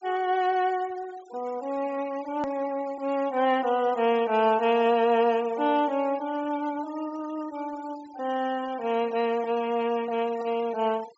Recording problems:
low-pass filter; nothing above 8 kHz
noise reduction artefacts; signal-to-artefact ratio 21 dB
hard cut with a click; at 2.5 s

